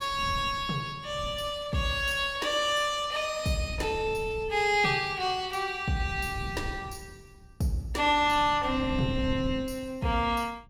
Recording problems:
wind on the microphone; below 160 Hz, SNR 13 dB

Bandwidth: 17 kHz